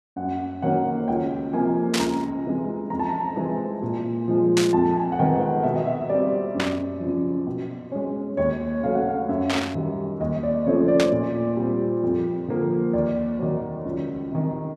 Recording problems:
static burst; 5 times, first at 2 s; peak +3 dB vs average level

